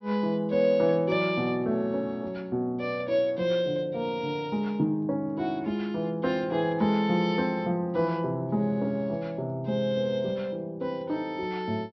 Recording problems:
treble missing; nothing above 5.8 kHz

